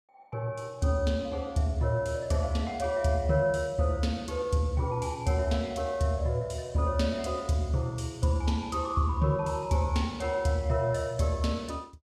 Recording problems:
none

